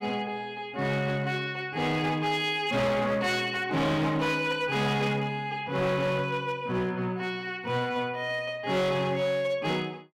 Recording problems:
distorted audio; hard clipping, signal-to-distortion ratio 10 dB

